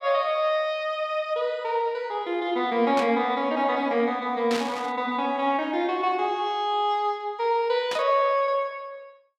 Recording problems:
static burst; at 3 s, at 4.5 s and at 8 s; peak -2 dB vs average level

